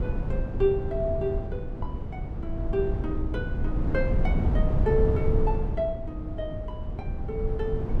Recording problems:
rumble; below 130 Hz, SNR -1 dB

